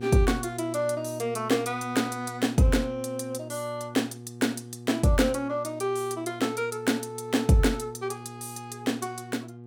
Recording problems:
electrical hum; 60 Hz, harmonics up to 840 Hz, SNR 14 dB

